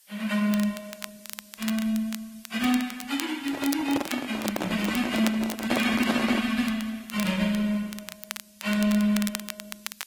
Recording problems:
lossy codec; Opus, then AAC, log-spectral distance 7 dB
background hiss; slope +4 dB per octave, SNR 26 dB
crackling; vinyl, SNR 12 dB
microphone handling noise; from 3.5 to 6.5 s; peak +3 dB vs average level

